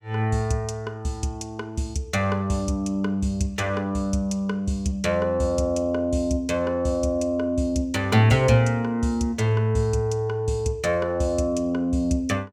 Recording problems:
none

